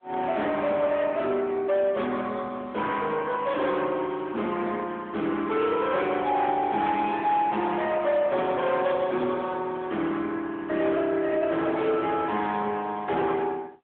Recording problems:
telephone audio; 240 Hz to 3.6 kHz, AMR-NB
distortion; hard clipping, signal-to-distortion ratio 13 dB

